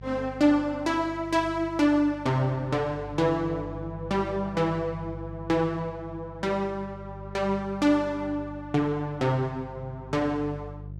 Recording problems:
hum; 50 Hz, harmonics up to 350 Hz, SNR 15 dB

